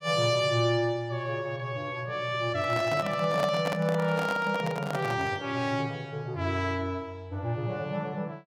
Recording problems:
microphone handling noise; from 2.5 to 5.5 s; peak +1 dB vs average level

